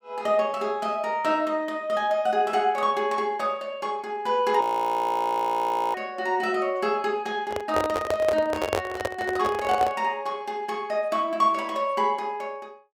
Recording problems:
frozen audio; at 4.5 s for 1.5 s
microphone handling noise; from 7.5 to 10 s; peak +3 dB vs average level

